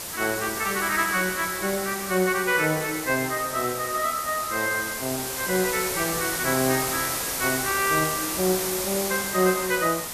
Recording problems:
hiss; slope -2 dB per octave, SNR 3 dB

